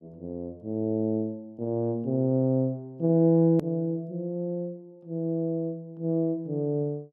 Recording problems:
click at an edit; at 3.5 s

